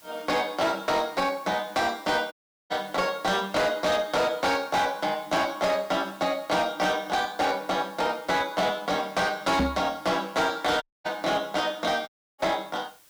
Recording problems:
distorted audio; hard clipping, uneven, signal-to-distortion ratio 10 dB
background hiss; slope 0 dB per octave, SNR 25 dB
audio cutting out; at 2.5 s, at 11 s and at 12 s
microphone bump; at 9.5 s; peak +5 dB vs average level

